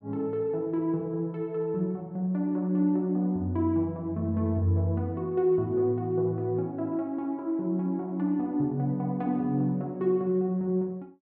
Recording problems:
none

